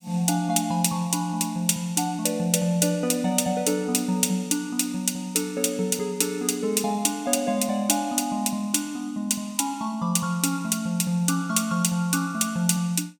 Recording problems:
none

